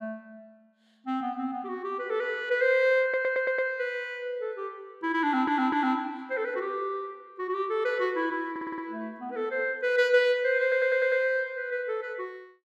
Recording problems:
audio stuttering; 4 times, first at 3 s

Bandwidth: 14 kHz